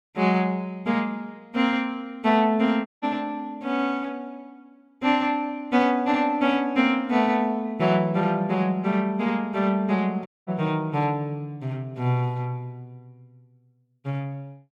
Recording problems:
audio cutting out; at 3 s and at 10 s

